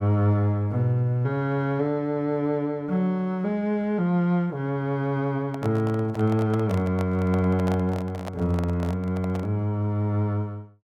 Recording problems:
handling noise; from 5.5 to 9.5 s; peak -5 dB vs average level

